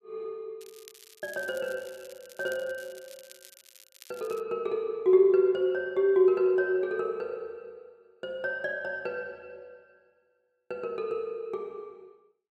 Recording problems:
crackling; from 0.5 to 4.5 s; loose cable, SNR 23 dB

